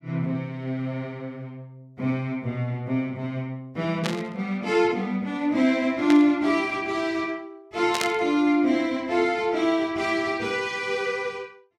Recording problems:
static burst; at 4 s, at 6 s and at 8 s; peak +2 dB vs average level

